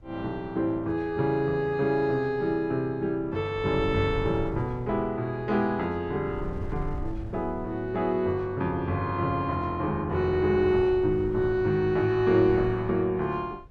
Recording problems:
wind noise; below 100 Hz, SNR 16 dB

